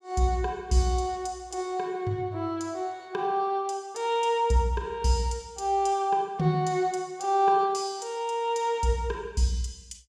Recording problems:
none

